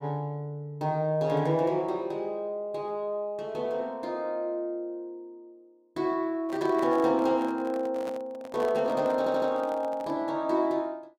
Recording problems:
microphone handling noise; from 6.5 to 10 s; peak -8 dB vs average level
audio stuttering; at 9 s

